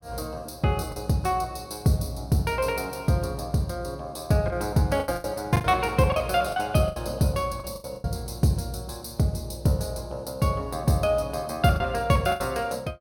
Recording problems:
packet loss; 6% of the sound replaced, filled with the last packet

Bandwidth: 17.5 kHz